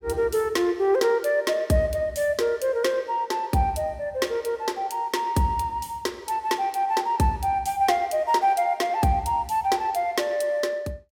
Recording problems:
none

